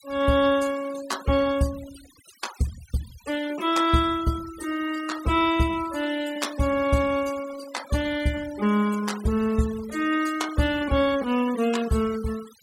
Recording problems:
noise reduction artefacts; signal-to-artefact ratio 17 dB

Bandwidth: 16.5 kHz